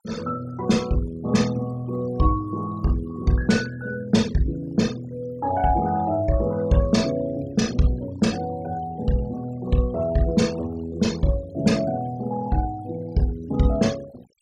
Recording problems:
denoising artefacts; signal-to-artefact ratio 19 dB

